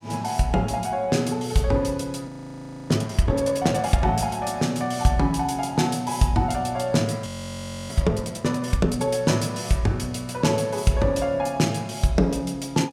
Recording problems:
audio freezing; at 2.5 s for 0.5 s and at 7.5 s for 0.5 s

